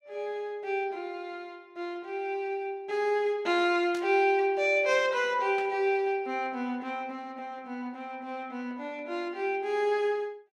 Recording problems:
burst of static; at 4 s and at 5.5 s; peak -10 dB vs average level

